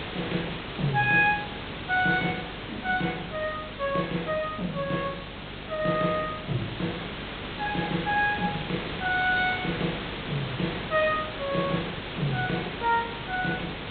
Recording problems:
low-pass filter; nothing above 4 kHz
electrical hum; 50 Hz, harmonics up to 300 Hz, SNR 18 dB
hiss; SNR 7 dB

